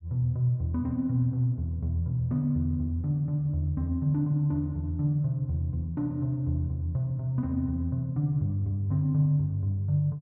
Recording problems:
none

